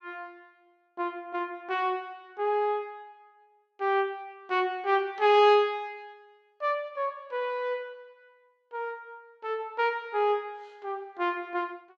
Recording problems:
none

